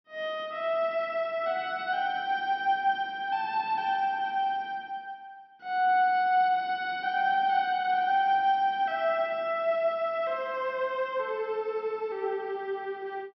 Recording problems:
low-pass filter; nothing above 5.8 kHz

